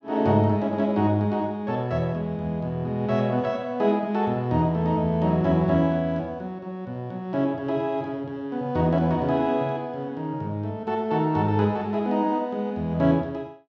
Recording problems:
none

